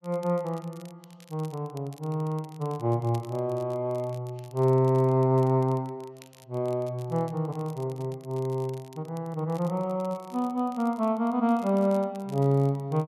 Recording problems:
crackle; vinyl, SNR 27 dB

